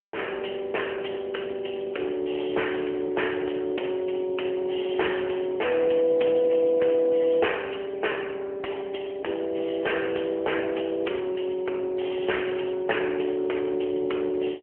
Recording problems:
phone line; 300 Hz to 3.1 kHz, AMR-NB

